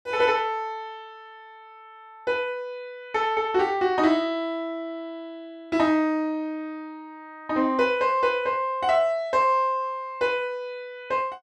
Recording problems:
none

